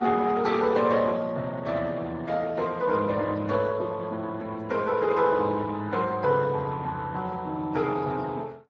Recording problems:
codec artefacts; Vorbis, then Speex, log-spectral distance 3 dB

